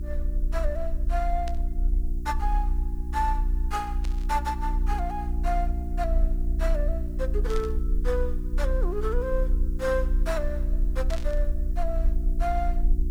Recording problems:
hum; 60 Hz, harmonics up to 360 Hz, SNR 6 dB
hiss; slope +5 dB per octave, SNR 29 dB
low-frequency rumble; below 60 Hz, strongest tone 34 Hz, SNR -3 dB
burst of static; 4 times, first at 1.5 s; peak -5 dB vs average level

